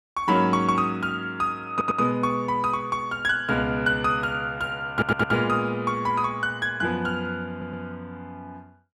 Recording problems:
audio stuttering; at 1.5 s, at 5 s and at 7.5 s

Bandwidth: 14 kHz